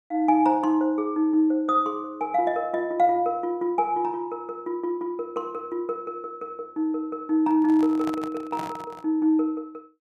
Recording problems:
handling noise; from 7.5 to 9 s; peak -6 dB vs average level

